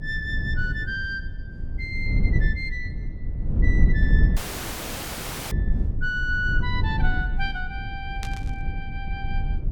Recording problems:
rumble; below 90 Hz, SNR -3 dB
dropout; at 4.5 s for 1 s
burst of static; at 8 s; peak -2 dB vs average level

